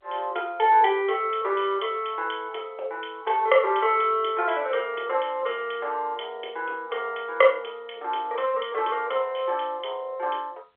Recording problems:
telephone audio; 340 Hz to 3.4 kHz, G.711

